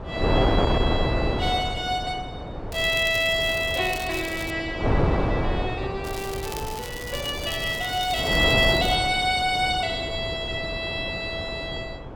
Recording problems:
wind noise; below 630 Hz, SNR 4 dB
crackling; from 2.5 to 4.5 s and from 6 to 9 s; loose cable, SNR 13 dB

